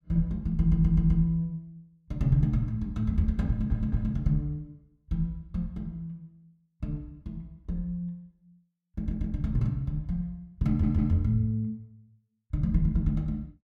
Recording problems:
audio stuttering; 4 times, first at 0.5 s

